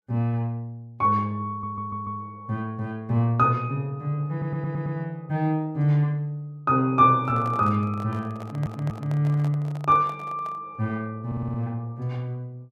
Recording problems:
audio stuttering; 4 times, first at 1.5 s
microphone handling noise; from 7 to 11 s; peak -11 dB vs average level

